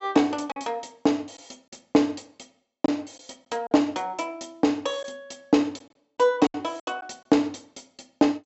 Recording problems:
low-pass filter; nothing above 7.7 kHz
lost packets; 5% of the sound replaced, filled with silence

